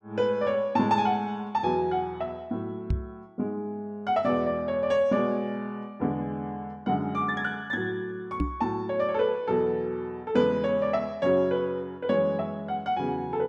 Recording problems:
microphone thump; at 3 s and at 8.5 s; peak +4 dB vs average level

